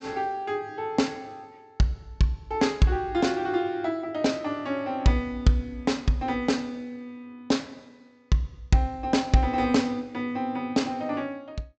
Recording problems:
treble missing; nothing above 8 kHz

